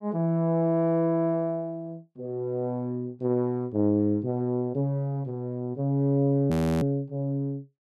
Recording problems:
audio freezing; at 6.5 s

